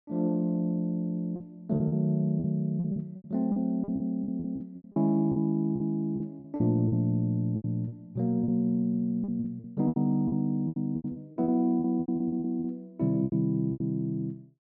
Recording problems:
lost packets; 14% of the sound replaced, filled with repeated pitch periods

